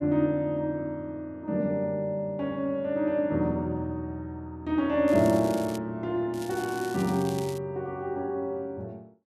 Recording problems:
crackle; at 5 s and from 6.5 to 7.5 s; loose cable, SNR 16 dB

